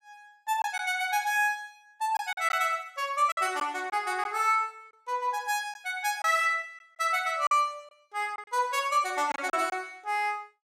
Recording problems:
packet loss; 5% of the sound replaced, filled with silence

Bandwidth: 15.5 kHz